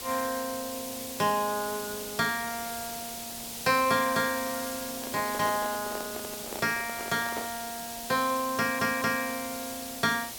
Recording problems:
hiss; SNR 7 dB
handling noise; from 5 to 7.5 s; peak -4 dB vs average level
stutter; at 8.5 s

